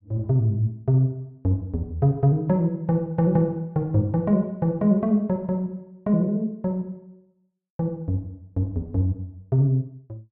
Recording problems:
none

